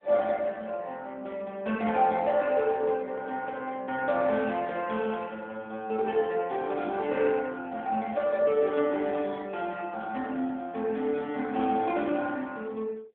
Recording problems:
phone line; 240 Hz to 3.5 kHz, AMR-NB

